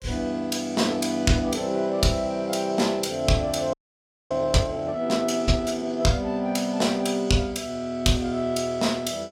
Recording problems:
audio freezing; at 3.5 s for 0.5 s

